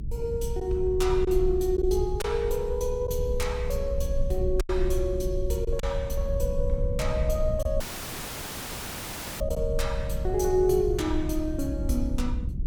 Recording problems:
low-frequency rumble; below 64 Hz, strongest tone 24 Hz, SNR 4 dB
packet loss; 2% of the sound replaced, filled with silence
audio cutting out; at 8 s for 1.5 s; filled with static

